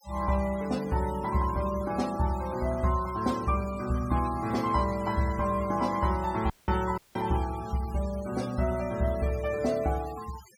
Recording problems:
denoising artefacts; signal-to-artefact ratio 17 dB
audio cutting out; at 6.5 s and at 7 s

